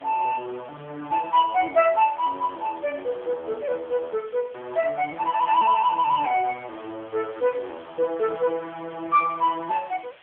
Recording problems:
telephone audio; 300 Hz to 3.5 kHz, AMR-NB
hiss; SNR 27 dB

